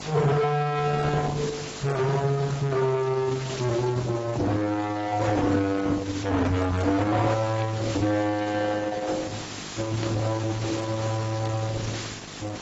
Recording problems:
codec artefacts; Opus, then AAC, log-spectral distance 7 dB, nothing above 7.6 kHz
distorted audio; soft clipping, signal-to-distortion ratio 6 dB
hum; 50 Hz, harmonics up to 1.6 kHz, SNR 19 dB
background hiss; slope -1 dB per octave, SNR 12 dB
static burst; at 3.5 s, at 7.5 s and at 10 s; peak -6 dB vs average level

